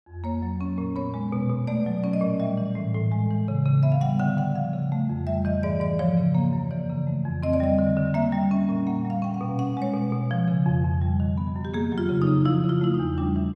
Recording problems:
none

